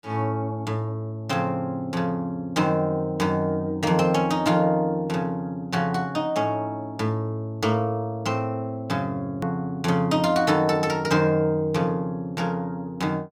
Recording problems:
edit click; at 9.5 s

